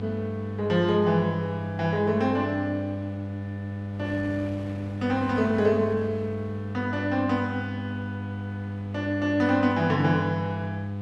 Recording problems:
hum; 50 Hz, harmonics up to 1 kHz, SNR 7 dB
wind noise; below 970 Hz, SNR 22 dB

